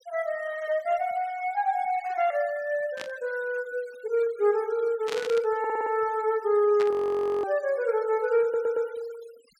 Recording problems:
denoising artefacts; signal-to-artefact ratio 24 dB
static burst; at 3 s, at 5 s and at 7 s; peak -4 dB vs average level
stutter; at 5.5 s and at 8.5 s
audio freezing; at 7 s for 0.5 s

